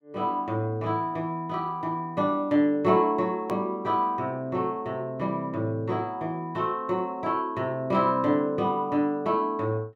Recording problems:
hard cut with a click; at 3.5 s

